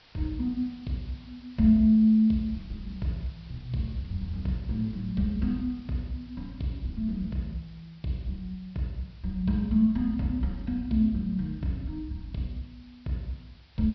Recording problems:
treble missing; nothing above 5.5 kHz
background hiss; SNR 28 dB

